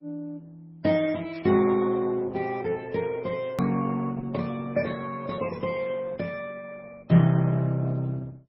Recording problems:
lossy codec; Opus, then MP3, log-spectral distance 3 dB, nothing above 18.9 kHz
hard cut with a click; at 3.5 s

